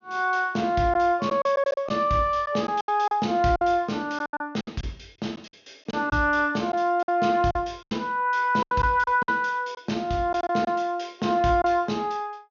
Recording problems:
treble missing; nothing above 6.7 kHz
lost packets; 8% of the sound replaced, filled with silence

